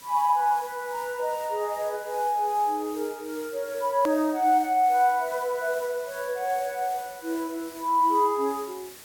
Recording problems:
hiss; slope -1 dB per octave, SNR 18 dB
hard cut with a click; at 4 s

